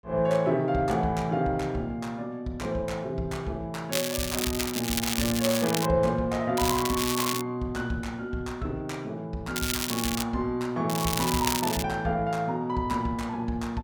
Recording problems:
crackling; 4 times, first at 4 s; loose cable, SNR 2 dB

